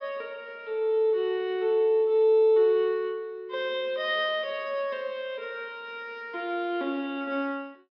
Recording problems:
low-pass filter; nothing above 5.5 kHz

